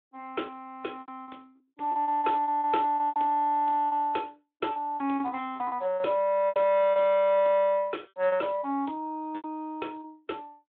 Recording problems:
telephone audio; 260 Hz to 3.6 kHz, Speex
packet loss; 11% of the sound replaced, filled with repeated pitch periods

